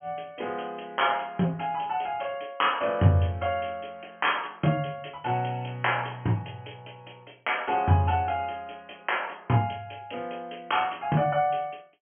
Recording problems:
low-pass filter; nothing above 3.2 kHz

